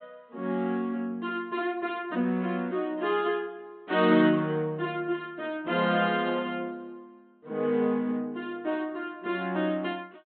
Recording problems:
low-pass filter; nothing above 4 kHz

